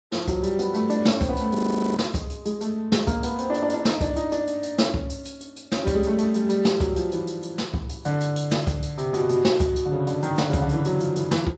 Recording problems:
codec artefacts; Speex, then MP3, log-spectral distance 4 dB, nothing above 7.6 kHz
frozen audio; at 1.5 s

